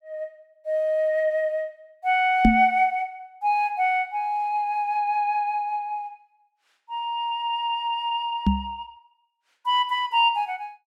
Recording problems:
microphone bump; at 2.5 s and at 8.5 s; peak +9 dB vs average level

